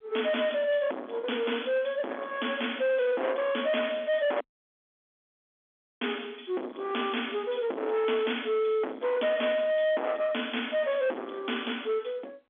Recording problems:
telephone audio; 240 Hz to 3.5 kHz, G.711
distorted audio; soft clipping, signal-to-distortion ratio 5 dB
audio cutting out; at 4.5 s for 1.5 s

